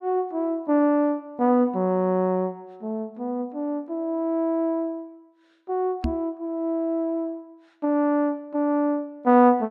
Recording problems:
knock on the microphone; at 6 s; peak +1 dB vs average level

